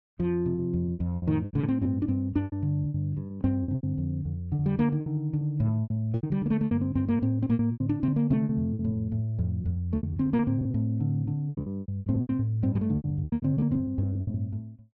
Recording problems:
lost packets; 17% of the sound replaced, filled with repeated pitch periods

